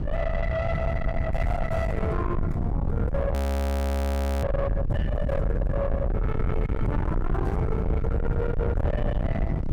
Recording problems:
distorted audio; soft clipping, signal-to-distortion ratio 5 dB
low-frequency rumble; below 200 Hz, SNR -2 dB
wind on the microphone; below 530 Hz, SNR 12 dB
audio freezing; at 3.5 s for 1 s

